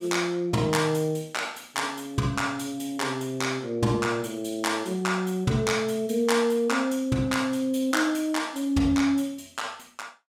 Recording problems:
none

